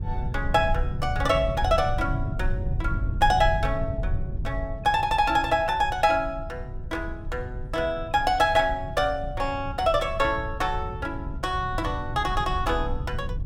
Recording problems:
rumble; below 100 Hz, SNR 7 dB

